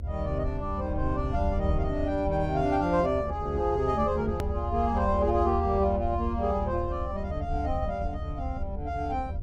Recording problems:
electrical hum; 50 Hz, harmonics up to 600 Hz, SNR 23 dB
low-frequency rumble; below 80 Hz, SNR 5 dB
hard cut with a click; at 4.5 s

